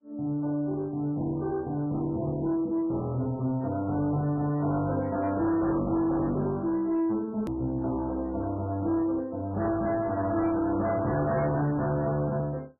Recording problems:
lossy codec; AAC, then MP3, log-spectral distance 2 dB, nothing above 13.1 kHz
distorted audio; soft clipping, signal-to-distortion ratio 10 dB
hard cut with a click; at 7.5 s

